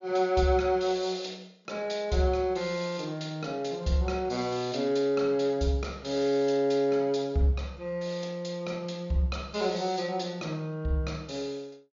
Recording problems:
treble cut off; nothing above 7.1 kHz

